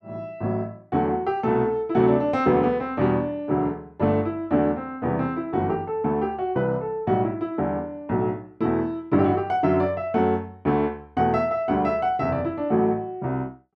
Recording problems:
none

